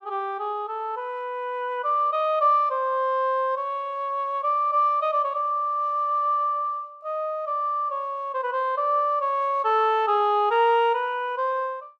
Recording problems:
none

